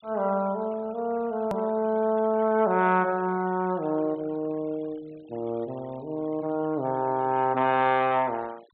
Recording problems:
treble cut off; nothing above 4 kHz
noise reduction artefacts; signal-to-artefact ratio 26 dB
edit click; at 1.5 s

